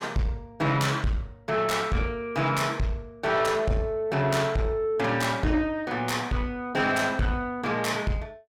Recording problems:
distortion; soft clipping, signal-to-distortion ratio 10 dB

